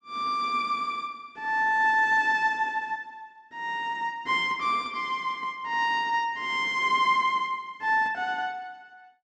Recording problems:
none

